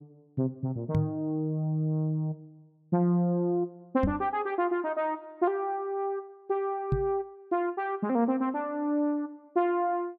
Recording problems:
knock on the microphone; at 1 s, at 4 s and at 7 s; peak +5 dB vs average level

